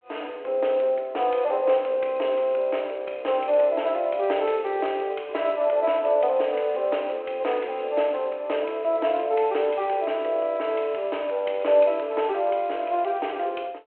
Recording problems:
phone line; 320 Hz to 3.2 kHz, G.726

